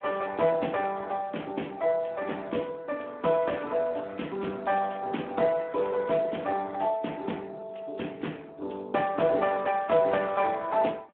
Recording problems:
telephone audio; 260 Hz to 3.4 kHz, Speex

